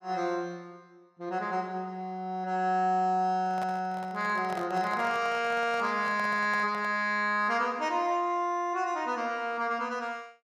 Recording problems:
microphone handling noise; from 3.5 to 7 s; peak -6 dB vs average level

